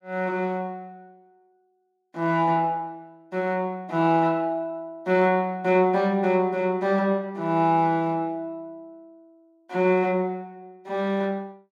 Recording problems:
none

